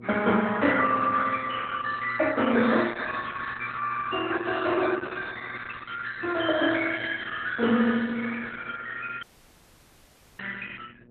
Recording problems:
codec artefacts; MP2, then Opus, log-spectral distance 5 dB, nothing above 3.6 kHz
hum; 60 Hz, harmonics up to 720 Hz, SNR 22 dB
dropout; at 9 s for 1 s

